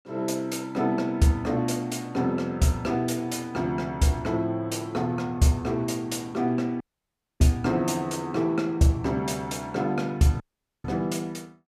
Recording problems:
audio cutting out; at 7 s for 0.5 s and at 10 s

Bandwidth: 15 kHz